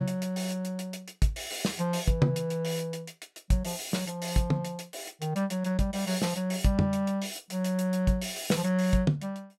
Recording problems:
none

